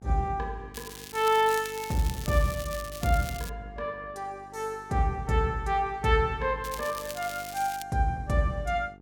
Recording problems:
hum; 50 Hz, harmonics up to 1.3 kHz, SNR 22 dB
crackle; from 0.5 to 3.5 s and from 6.5 to 8 s; loose cable, SNR 12 dB

